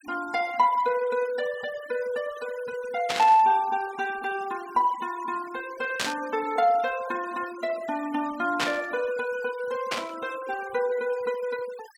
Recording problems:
noise reduction artefacts; signal-to-artefact ratio 19 dB
burst of static; 4 times, first at 3 s; peak +4 dB vs average level

